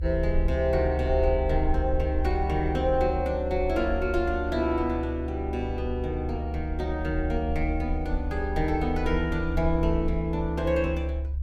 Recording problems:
rumble; below 72 Hz, strongest tone 70 Hz, SNR 4 dB

